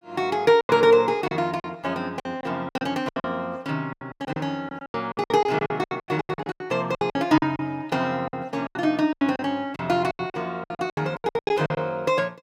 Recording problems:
lost packets; 19% of the sound replaced, filled with silence

